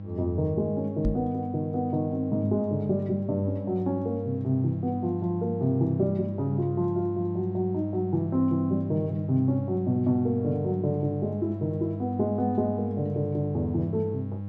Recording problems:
hum; 50 Hz, harmonics up to 800 Hz, SNR 8 dB
knock on the microphone; at 1 s; peak +4 dB vs average level

